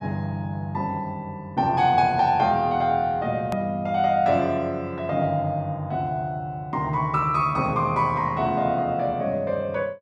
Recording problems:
click at an edit; at 3.5 s

